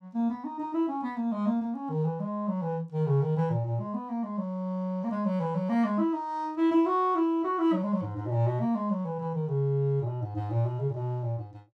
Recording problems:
none

